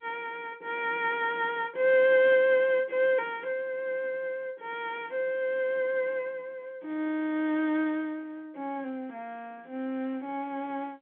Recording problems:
telephone audio; 190 Hz to 3.4 kHz, G.711

